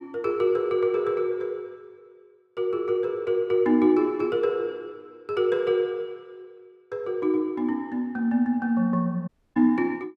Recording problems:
audio cutting out; at 9.5 s

